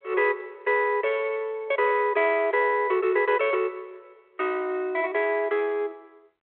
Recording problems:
phone line; 340 Hz to 3.3 kHz, G.726

